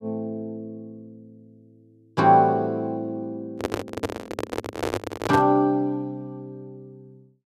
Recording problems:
handling noise; from 3.5 to 5.5 s; peak +1 dB vs average level

